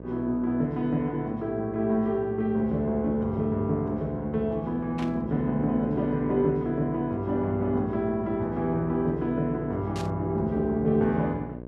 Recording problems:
mains hum; 60 Hz, harmonics up to 1 kHz, SNR 12 dB
burst of static; at 5 s and at 10 s; peak -9 dB vs average level

